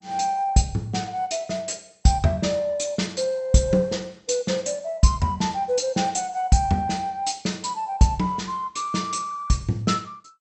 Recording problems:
lossy compression; MP2, log-spectral distance 4 dB, nothing above 8 kHz

